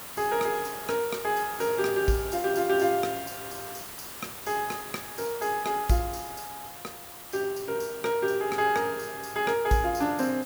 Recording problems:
background hiss; slope -2 dB per octave, SNR 11 dB

